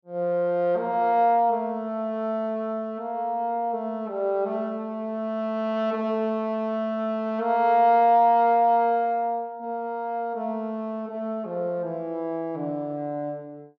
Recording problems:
none

